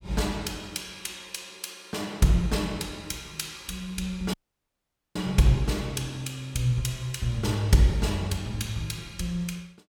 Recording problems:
audio cutting out; at 4.5 s for 1 s

